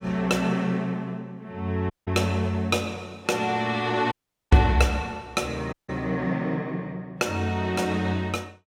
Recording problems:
dropout; at 2 s, at 4 s and at 5.5 s

